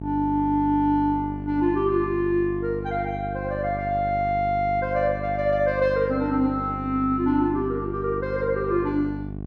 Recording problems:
hum; 50 Hz, harmonics up to 800 Hz, SNR 9 dB

